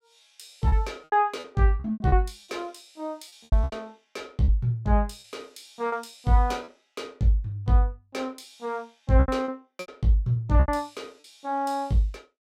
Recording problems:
packet loss; 11% of the sound replaced, filled with repeated pitch periods

